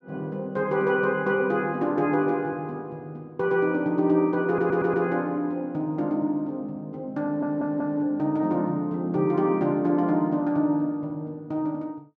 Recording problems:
audio stuttering; at 4.5 s and at 7 s

